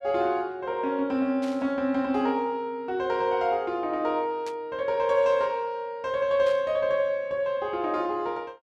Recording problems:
burst of static; at 1.5 s, at 4.5 s and at 6.5 s; peak -12 dB vs average level

